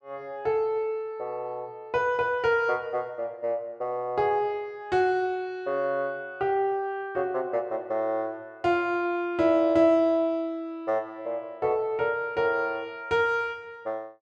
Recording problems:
none

